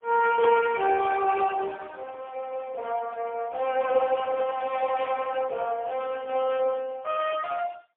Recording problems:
telephone audio; 320 Hz to 2.7 kHz, AMR-NB, then MP3
microphone handling noise; from 4 to 5.5 s; peak -9 dB vs average level

